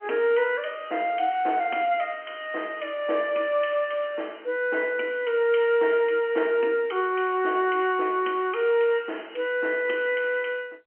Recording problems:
telephone audio; 240 Hz to 3.2 kHz, G.711

